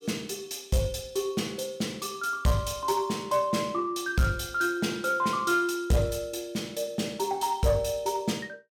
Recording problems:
distorted audio; soft clipping, signal-to-distortion ratio 12 dB

